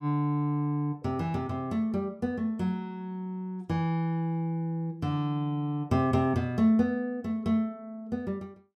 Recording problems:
none

